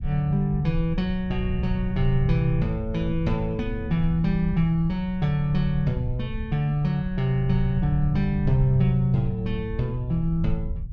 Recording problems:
low-frequency rumble; below 92 Hz, SNR 8 dB

